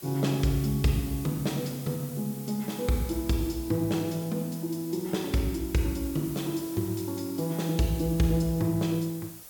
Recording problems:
hiss; slope -1 dB per octave, SNR 14 dB

